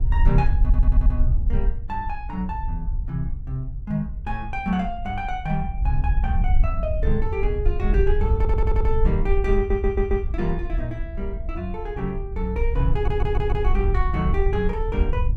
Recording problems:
wind on the microphone; below 60 Hz, SNR -2 dB
audio stuttering; 4 times, first at 0.5 s

